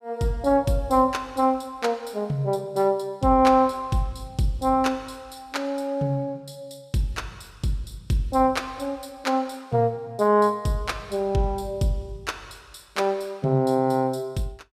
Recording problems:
none

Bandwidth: 14.5 kHz